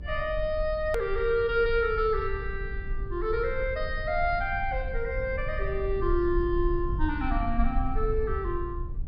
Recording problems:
low-pass filter; nothing above 5.5 kHz
rumble; below 58 Hz, SNR 6 dB
click at an edit; at 1 s

